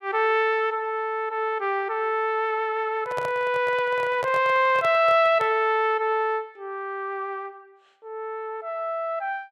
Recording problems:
microphone handling noise; from 3 to 5.5 s; peak -5 dB vs average level

